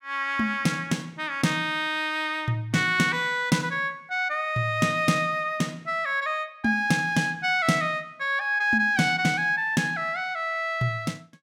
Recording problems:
none

